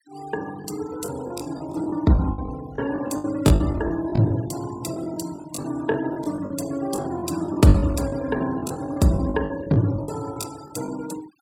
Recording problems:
noise reduction artefacts; signal-to-artefact ratio 19 dB
packet loss; 13% of the sound replaced, filled with the last packet

